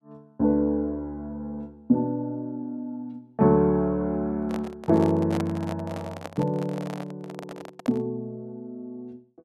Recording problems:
handling noise; from 4.5 to 8 s; peak -3 dB vs average level

